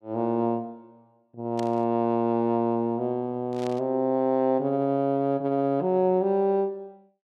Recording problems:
static burst; at 1.5 s and at 3.5 s; peak -12 dB vs average level

